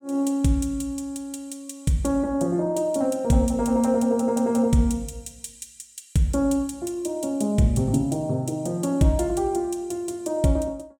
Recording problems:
none

